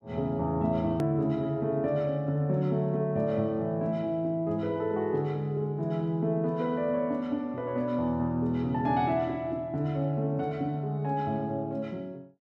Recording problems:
click at an edit; at 1 s

